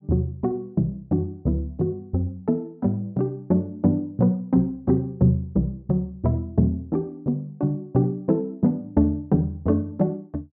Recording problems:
treble cut off; nothing above 8 kHz

